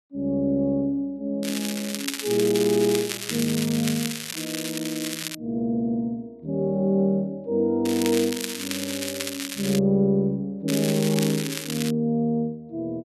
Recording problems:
crackling; from 1.5 to 5.5 s, from 8 to 10 s and from 11 to 12 s; loose cable, SNR 6 dB

